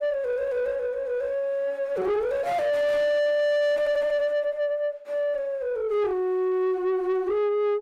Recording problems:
distortion; soft clipping, signal-to-distortion ratio 6 dB

